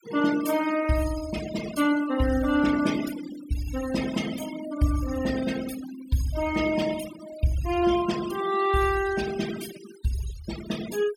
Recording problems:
noise reduction artefacts; signal-to-artefact ratio 12 dB

